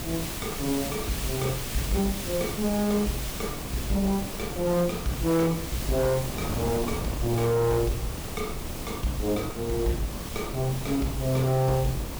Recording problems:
distortion; soft clipping, signal-to-distortion ratio 11 dB
background hiss; slope +1 dB per octave, SNR 8 dB
wind on the microphone; below 410 Hz, SNR 8 dB

